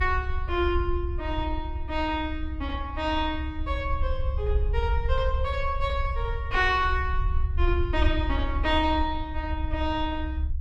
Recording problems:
rumble; below 68 Hz, SNR 2 dB

